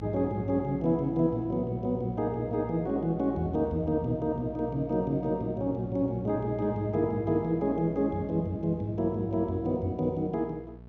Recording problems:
electrical hum; 60 Hz, harmonics up to 900 Hz, SNR 16 dB

